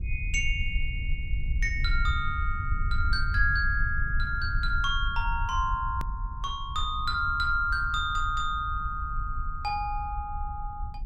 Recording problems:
low-frequency rumble; below 66 Hz, SNR 4 dB
hard cut with a click; at 6 s

